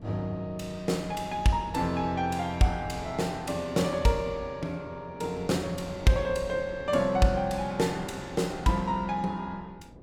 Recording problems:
wind noise; below 350 Hz, SNR 19 dB

